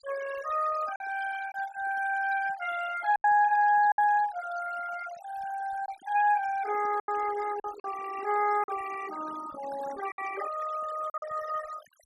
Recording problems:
denoising artefacts; signal-to-artefact ratio 15 dB
packet loss; 5% of the sound replaced, filled with silence

